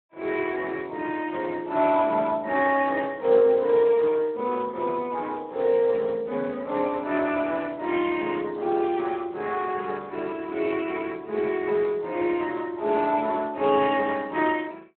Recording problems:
telephone audio; 280 Hz to 3.1 kHz, Speex

